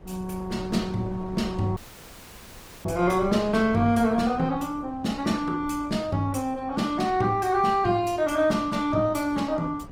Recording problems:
lossy compression; Opus, log-spectral distance 3 dB
wind on the microphone; below 330 Hz, SNR 19 dB
dropout; at 2 s for 1 s

